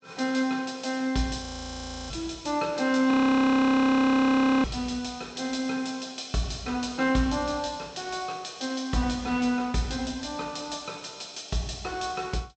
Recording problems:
treble missing; nothing above 8 kHz
frozen audio; at 1.5 s for 0.5 s and at 3 s for 1.5 s

